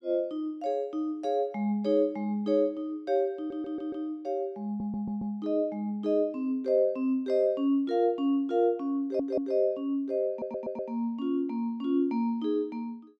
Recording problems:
stutter; 4 times, first at 3.5 s

